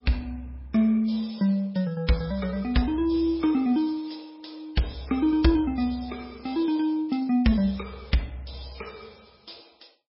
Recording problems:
lossy codec; MP3, log-spectral distance 5 dB, nothing above 5.3 kHz

